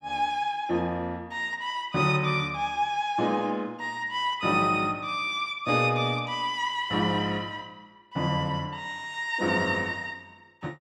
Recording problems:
none

